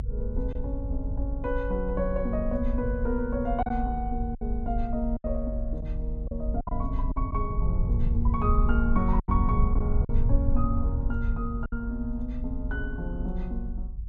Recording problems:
rumble; below 72 Hz, SNR -1 dB
lost packets; 4% of the sound replaced, filled with silence

